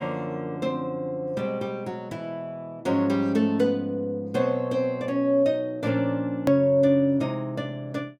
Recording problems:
edit click; at 6.5 s

